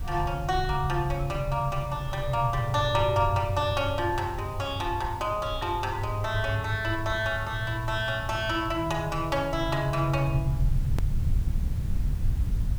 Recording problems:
hiss; slope -4 dB per octave, SNR 20 dB
low-frequency rumble; below 90 Hz, SNR 7 dB
click at an edit; at 11 s

